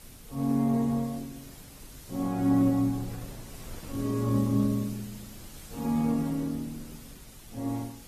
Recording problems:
codec artefacts; Opus, then AAC, log-spectral distance 7 dB, nothing above 12.3 kHz
hiss; slope +1 dB per octave, SNR 21 dB
wind on the microphone; below 250 Hz, SNR 22 dB

